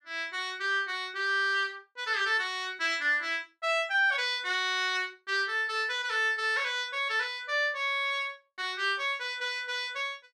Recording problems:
none

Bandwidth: 14.5 kHz